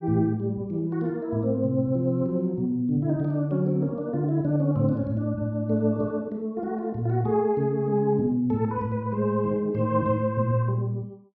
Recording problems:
low-pass filter; nothing above 5.9 kHz

